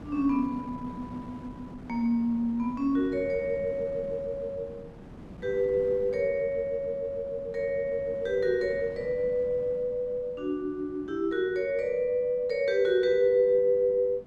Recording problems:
wind on the microphone; below 380 Hz, SNR 18 dB

